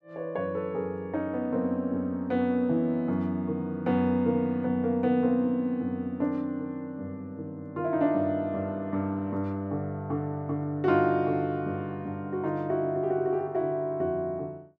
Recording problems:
none

